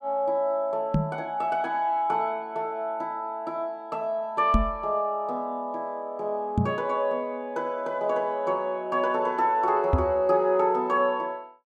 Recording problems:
microphone thump; 4 times, first at 1 s; peak +7 dB vs average level

